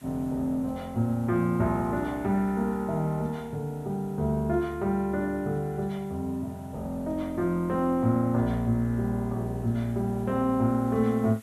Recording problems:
hiss; SNR 28 dB

